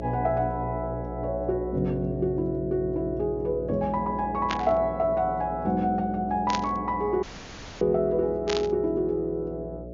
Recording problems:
treble cut off; nothing above 7 kHz
hum; 60 Hz, harmonics up to 660 Hz, SNR 10 dB
burst of static; at 4.5 s, at 6.5 s and at 8.5 s; peak 0 dB vs average level
dropout; at 7 s for 0.5 s

